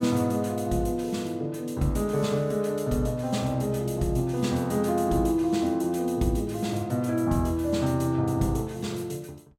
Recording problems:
none

